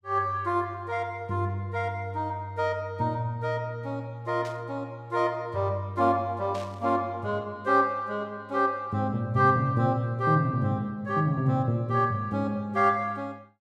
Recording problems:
static burst; at 4.5 s and at 6.5 s; peak -12 dB vs average level

